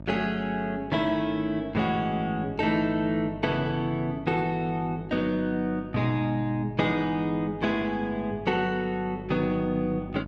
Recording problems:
mains hum; 50 Hz, harmonics up to 950 Hz, SNR 15 dB

